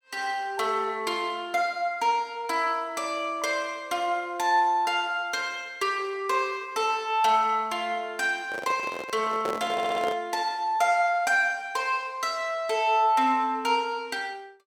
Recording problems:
handling noise; from 8.5 to 10 s; peak -2 dB vs average level
audio stuttering; at 9.5 s

